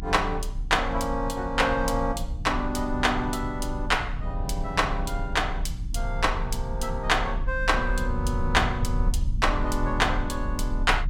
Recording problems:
hum; 60 Hz, harmonics up to 300 Hz, SNR 17 dB
rumble; below 66 Hz, strongest tone 34 Hz, SNR 5 dB

